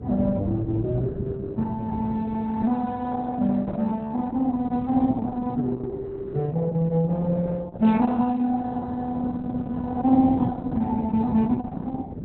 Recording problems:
lossy codec; Opus, log-spectral distance 2 dB, nothing above 4 kHz
wind on the microphone; below 250 Hz, SNR 9 dB

